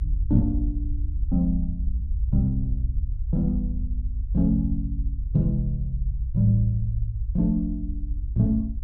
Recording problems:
low-frequency rumble; below 62 Hz, SNR 3 dB

